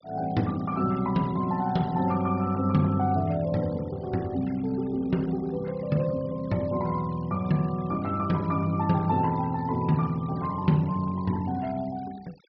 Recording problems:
low-pass filter; nothing above 5.5 kHz
noise reduction artefacts; signal-to-artefact ratio 24 dB

